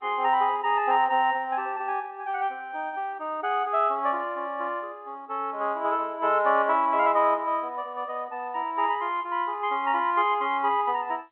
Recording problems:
phone line; 240 Hz to 3.3 kHz, G.711

